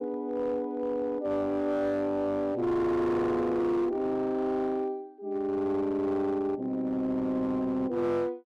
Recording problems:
distortion; hard clipping, uneven, signal-to-distortion ratio 11 dB

